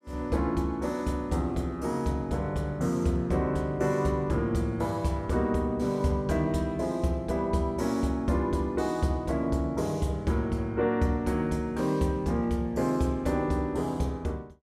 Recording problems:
none

